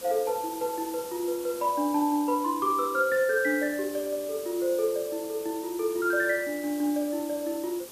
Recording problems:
background hiss; SNR 14 dB

